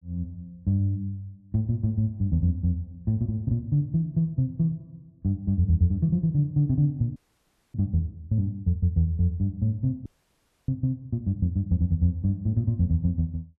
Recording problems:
frozen audio; at 7 s for 0.5 s and at 10 s for 0.5 s

